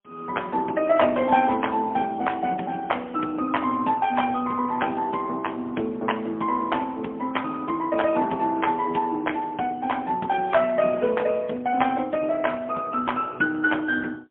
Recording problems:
telephone audio; 190 Hz to 3.3 kHz, AMR-NB, then MP3

